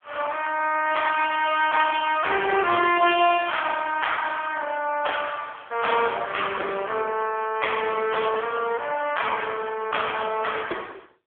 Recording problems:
phone line; 320 Hz to 2.9 kHz, AMR-NB

